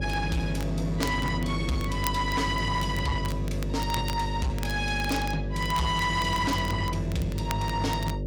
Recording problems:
distortion; soft clipping, signal-to-distortion ratio 12 dB
mains hum; 50 Hz, harmonics up to 600 Hz, SNR 4 dB
crackling; vinyl, SNR 15 dB

